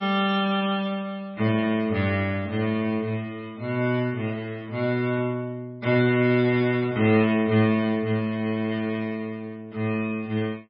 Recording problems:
codec artefacts; MP3, log-spectral distance 2 dB, nothing above 4.9 kHz

